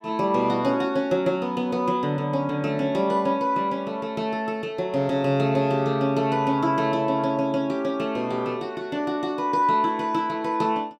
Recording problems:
none

